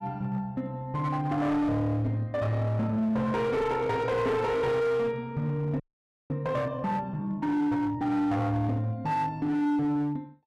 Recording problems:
distortion; hard clipping, signal-to-distortion ratio 10 dB
frozen audio; at 6 s for 0.5 s

